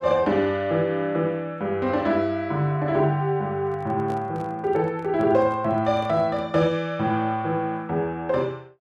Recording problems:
microphone handling noise; from 3.5 to 6.5 s; peak -10 dB vs average level

